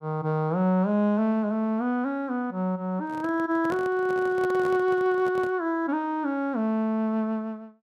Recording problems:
handling noise; from 3 to 5.5 s; peak -7 dB vs average level

